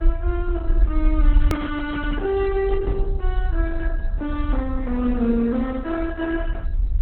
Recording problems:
lossy codec; Opus, log-spectral distance 2 dB, nothing above 19.5 kHz
low-frequency rumble; below 50 Hz, strongest tone 36 Hz, SNR 0 dB
hard cut with a click; at 1.5 s

